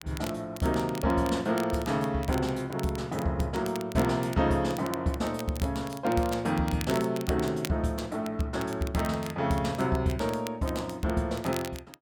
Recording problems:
crackle; vinyl, SNR 15 dB

